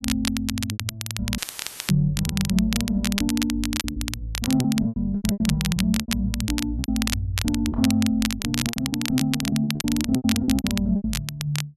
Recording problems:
crackling; vinyl, SNR 6 dB
packet loss; 14% of the sound replaced, filled with repeated pitch periods
audio cutting out; at 1.5 s for 0.5 s; filled with static

